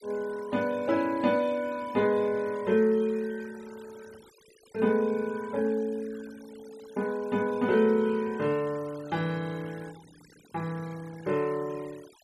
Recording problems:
denoising artefacts; signal-to-artefact ratio 24 dB

